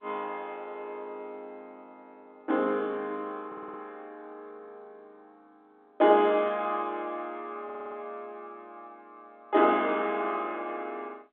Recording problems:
telephone audio; 240 Hz to 3.7 kHz, G.711
stutter; at 3.5 s and at 7.5 s

